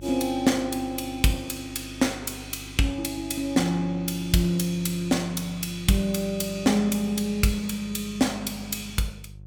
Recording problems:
electrical hum; 50 Hz, harmonics up to 400 Hz, SNR 18 dB

